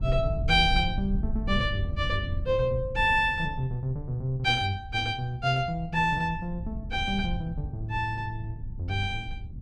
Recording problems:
low-frequency rumble; below 92 Hz, SNR 8 dB

